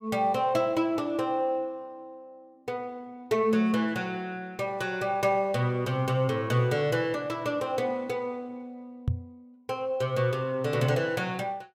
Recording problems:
microphone bump; at 9 s; peak +4 dB vs average level

